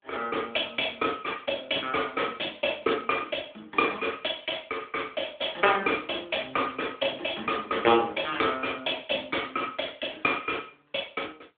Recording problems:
phone line; 280 Hz to 3.6 kHz, AMR-NB

